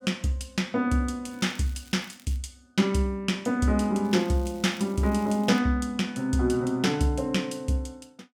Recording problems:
crackle; from 1.5 to 2.5 s and from 4 to 5.5 s; loose cable, SNR 26 dB

